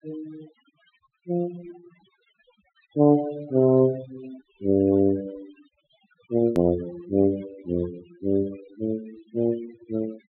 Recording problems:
treble missing; nothing above 4 kHz
denoising artefacts; signal-to-artefact ratio 19 dB
edit click; at 6.5 s

